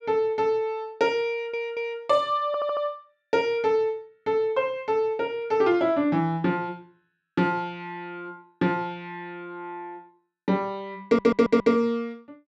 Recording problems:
stutter; at 1.5 s, at 2.5 s and at 11 s

